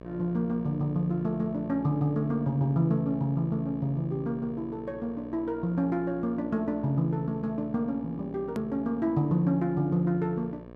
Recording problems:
electrical hum; 60 Hz, harmonics up to 1.9 kHz, SNR 17 dB
hard cut with a click; at 8.5 s

